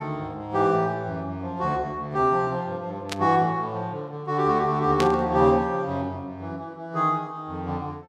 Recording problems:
burst of static; at 3 s and at 5 s; peak +1 dB vs average level

